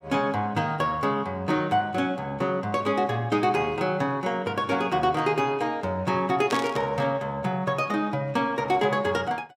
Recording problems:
static burst; at 6.5 s; peak -3 dB vs average level

